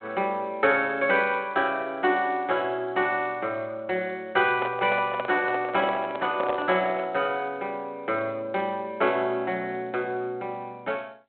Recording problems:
phone line; 240 Hz to 3.7 kHz, G.726
handling noise; from 4.5 to 7 s; peak +1 dB vs average level

